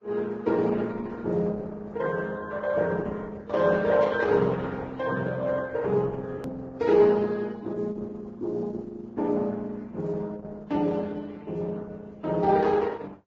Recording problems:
lossy compression; Opus, then Vorbis, log-spectral distance 3 dB
edit click; at 6.5 s

